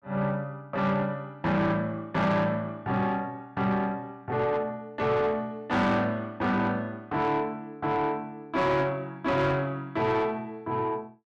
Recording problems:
distortion; soft clipping, signal-to-distortion ratio 11 dB

